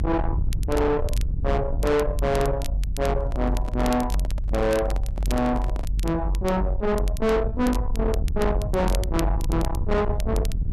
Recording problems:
distortion; soft clipping, signal-to-distortion ratio 8 dB
rumble; below 100 Hz, strongest tone 46 Hz, SNR 2 dB
crackling; vinyl, SNR 17 dB
microphone handling noise; from 3 to 6 s; peak -6 dB vs average level

